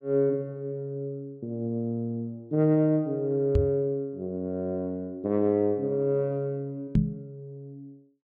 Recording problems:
microphone bump; at 3.5 s and at 7 s; peak +8 dB vs average level

